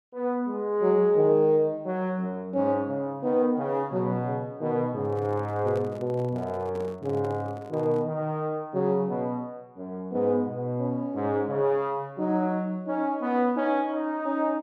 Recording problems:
handling noise; from 5 to 8 s; peak -9 dB vs average level

